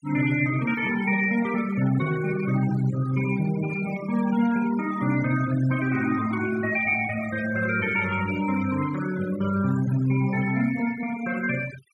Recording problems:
denoising artefacts; signal-to-artefact ratio 14 dB

